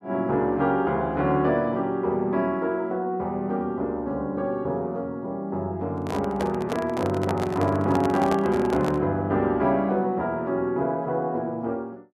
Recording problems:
microphone handling noise; from 6 to 9 s; peak -1 dB vs average level

